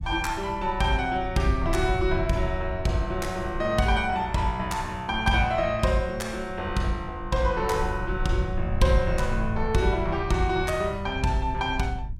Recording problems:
low-frequency rumble; below 92 Hz, SNR 9 dB

